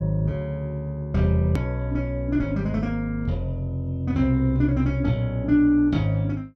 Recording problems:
edit click; at 1.5 s

